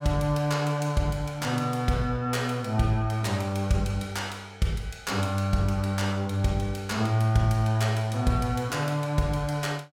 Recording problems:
none

